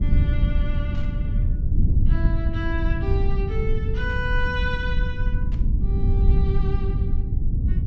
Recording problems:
low-pass filter; nothing above 8 kHz
low-frequency rumble; below 90 Hz, SNR -8 dB
burst of static; at 1 s, at 4 s and at 5.5 s; peak -12 dB vs average level

